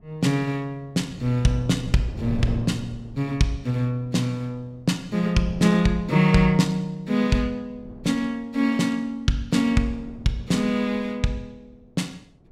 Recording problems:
wind on the microphone; below 240 Hz, SNR 16 dB

